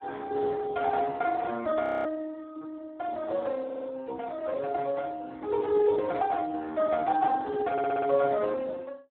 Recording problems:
phone line; 240 Hz to 2.1 kHz, Speex
audio freezing; at 2 s
audio stuttering; at 3.5 s and at 7.5 s

